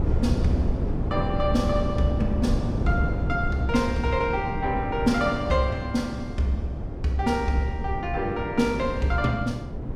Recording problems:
wind noise; below 210 Hz, SNR 4 dB

